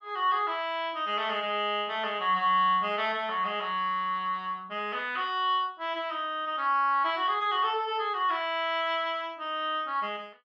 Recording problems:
none

